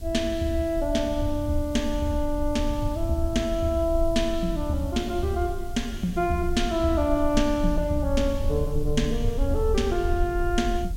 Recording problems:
background hiss; slope +3 dB per octave, SNR 24 dB
rumble; below 60 Hz, SNR 7 dB

